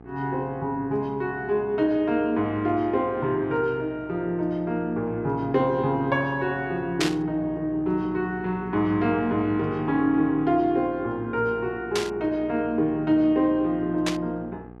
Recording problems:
hum; 60 Hz, harmonics up to 1.3 kHz, SNR 19 dB
static burst; at 7 s, at 12 s and at 14 s; peak +3 dB vs average level

